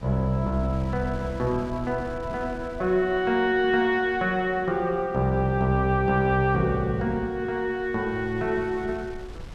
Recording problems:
wind noise; below 180 Hz, SNR 19 dB

